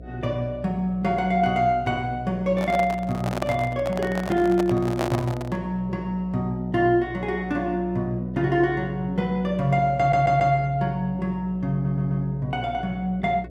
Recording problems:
hum; 60 Hz, harmonics up to 720 Hz, SNR 17 dB
microphone handling noise; from 2.5 to 5.5 s; peak +1 dB vs average level
stutter; at 10 s and at 12 s

